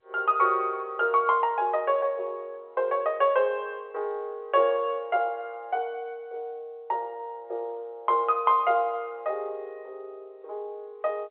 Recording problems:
phone line; 340 Hz to 3.4 kHz, G.711

